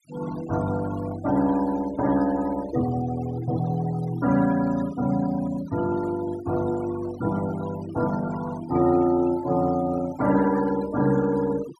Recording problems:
denoising artefacts; signal-to-artefact ratio 16 dB

